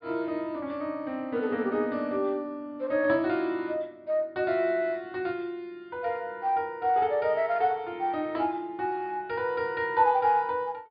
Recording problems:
treble missing; nothing above 5 kHz

